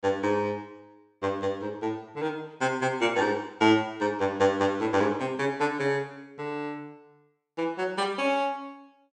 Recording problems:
none

